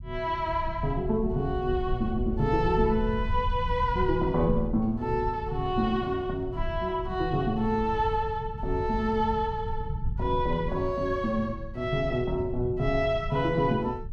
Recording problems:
rumble; below 96 Hz, SNR 8 dB

